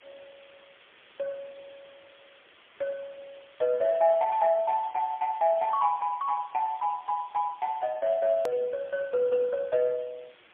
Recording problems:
phone line; 130 Hz to 2.4 kHz, AMR-NB, then MP3
background hiss; SNR 27 dB
edit click; at 8.5 s

